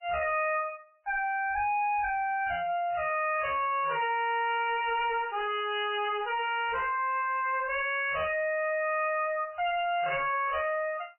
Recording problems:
lossy codec; MP3, log-spectral distance 5 dB, nothing above 2.5 kHz
distorted audio; soft clipping, signal-to-distortion ratio 5 dB

